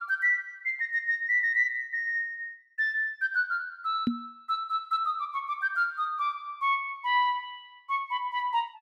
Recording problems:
knock on the microphone; at 4 s; peak +5 dB vs average level

